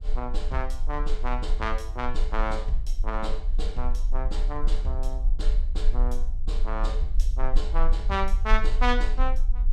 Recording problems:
rumble; below 38 Hz, strongest tone 20 Hz, SNR -3 dB

